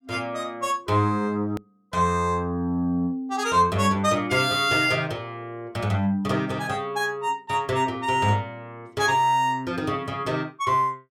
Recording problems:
hard cut with a click; at 1.5 s

